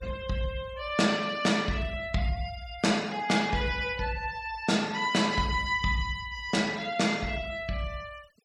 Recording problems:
denoising artefacts; signal-to-artefact ratio 20 dB

